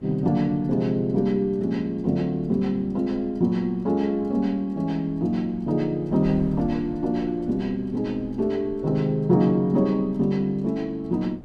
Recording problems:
wind noise; below 230 Hz, SNR 22 dB

